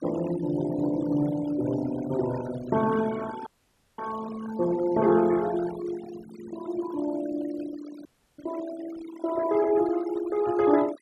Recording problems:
noise reduction artefacts; signal-to-artefact ratio 15 dB
audio freezing; at 3.5 s for 0.5 s and at 8 s

